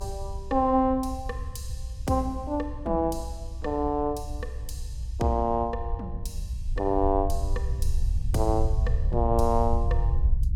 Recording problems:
rumble; below 70 Hz, SNR 4 dB

